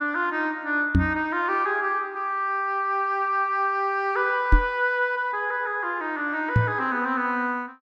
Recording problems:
microphone thump; at 1 s, at 4.5 s and at 6.5 s; peak +8 dB vs average level

